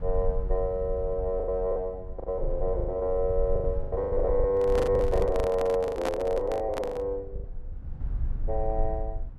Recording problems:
rumble; below 58 Hz, strongest tone 24 Hz, SNR 8 dB
lost packets; 14% of the sound replaced, filled with the last packet
handling noise; from 4.5 to 7 s; peak +1 dB vs average level

